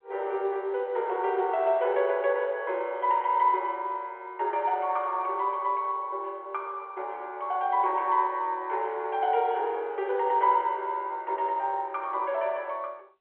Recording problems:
phone line; 340 Hz to 3.3 kHz, G.711

